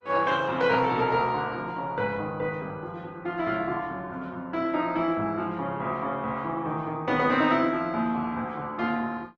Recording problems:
codec artefacts; Opus, log-spectral distance 2 dB

